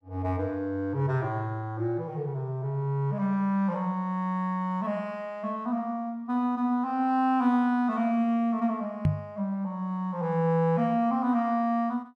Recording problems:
knock on the microphone; at 9 s; peak +7 dB vs average level

